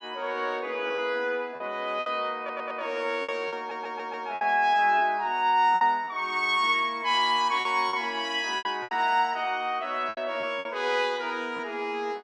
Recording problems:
lost packets; 7% of the sound replaced, filled with repeated pitch periods
stutter; at 2.5 s and at 3.5 s

